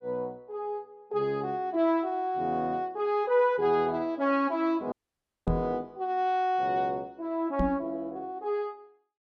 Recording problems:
dropout; at 5 s for 0.5 s
microphone bump; at 5.5 s and at 7.5 s; peak +4 dB vs average level

